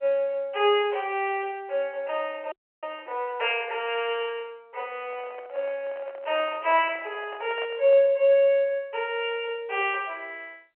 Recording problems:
phone line; 340 Hz to 3.1 kHz, G.711
frozen audio; at 2.5 s
microphone handling noise; from 5 to 8 s; peak -8 dB vs average level

